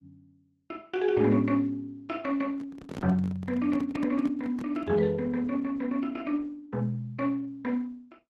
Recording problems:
lossy codec; Opus, log-spectral distance 2 dB
handling noise; from 2.5 to 5 s; peak -4 dB vs average level

